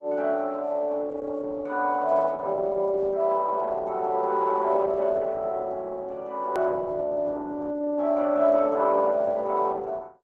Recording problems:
codec artefacts; Opus, log-spectral distance 2 dB
click at an edit; at 6.5 s

